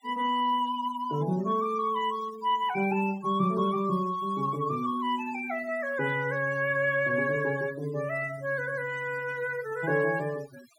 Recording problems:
denoising artefacts; signal-to-artefact ratio 19 dB

